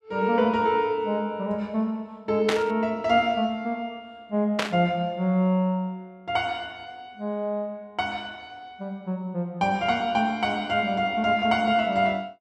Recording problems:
static burst; at 2.5 s and at 4.5 s; peak +3 dB vs average level

